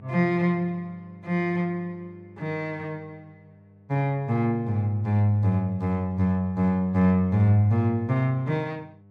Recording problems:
mains hum; 50 Hz, harmonics up to 900 Hz, SNR 26 dB

